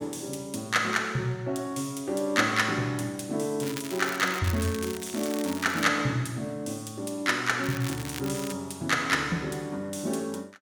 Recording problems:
crackle; from 3.5 to 6 s and at 7.5 s; loose cable, SNR 11 dB

